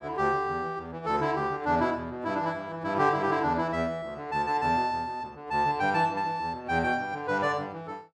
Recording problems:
none

